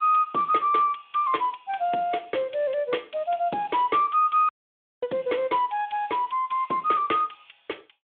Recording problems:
telephone audio; 260 Hz to 3.5 kHz, Speex
dropout; at 4.5 s for 0.5 s

